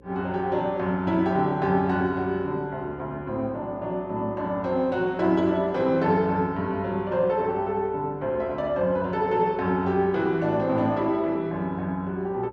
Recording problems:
electrical hum; 60 Hz, harmonics up to 540 Hz, SNR 25 dB

